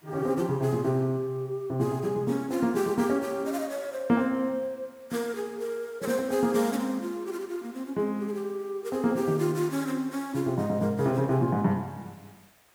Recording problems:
hiss; SNR 29 dB

